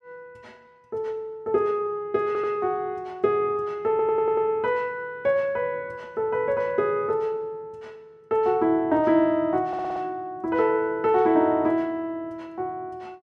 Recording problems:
audio stuttering; at 2.5 s, at 4 s and at 9.5 s

